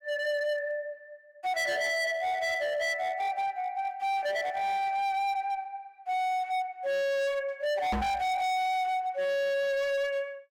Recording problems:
distortion; hard clipping, signal-to-distortion ratio 8 dB
knock on the microphone; at 8 s; peak +4 dB vs average level

